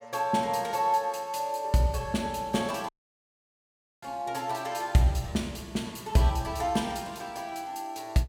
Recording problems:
audio cutting out; at 3 s for 1 s

